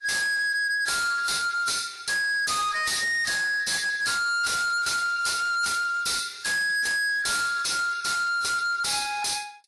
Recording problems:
lossy codec; AAC, log-spectral distance 5 dB, nothing above 11.3 kHz
distorted audio; hard clipping, signal-to-distortion ratio 6 dB

